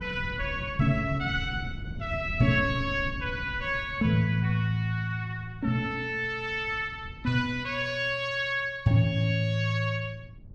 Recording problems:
wind on the microphone; below 150 Hz, SNR 13 dB

